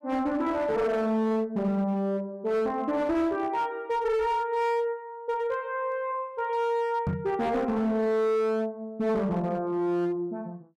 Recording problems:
distortion; hard clipping, uneven, signal-to-distortion ratio 11 dB
microphone bump; at 7 s; peak +2 dB vs average level

